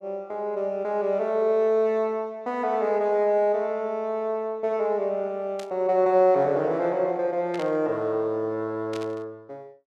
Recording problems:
static burst; at 5.5 s, at 7.5 s and at 9 s; peak -11 dB vs average level

